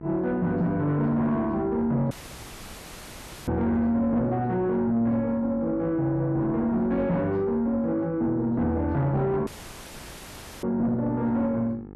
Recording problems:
distorted audio; soft clipping, signal-to-distortion ratio 11 dB
hum; 50 Hz, harmonics up to 1.4 kHz, SNR 17 dB
dropout; at 2 s for 1.5 s and at 9.5 s for 1 s

